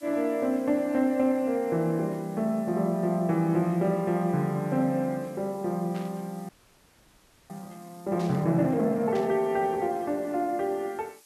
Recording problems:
hiss; slope +2 dB per octave, SNR 27 dB
burst of static; at 6 s, at 8 s and at 9 s; peak -13 dB vs average level
audio freezing; at 6.5 s for 1 s

